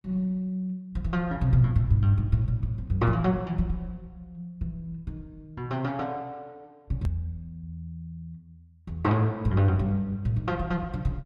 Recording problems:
hard cut with a click; at 7 s

